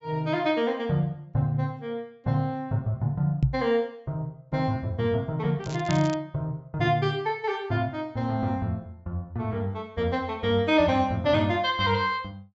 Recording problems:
low-pass filter; nothing above 8 kHz
microphone thump; at 3.5 s; peak +8 dB vs average level
crackle; at 5.5 s; loose cable, SNR 16 dB

